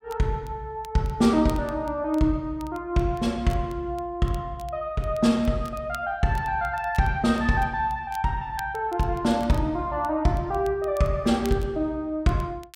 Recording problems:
crackling; vinyl, SNR 25 dB

